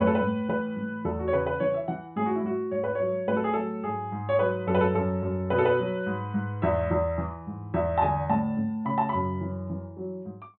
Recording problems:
low-pass filter; nothing above 4.1 kHz

